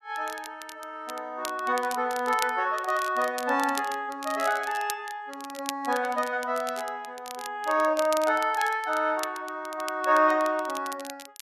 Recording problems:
crackling; vinyl, SNR 14 dB

